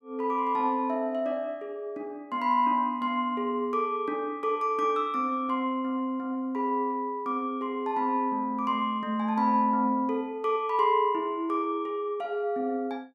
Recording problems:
none

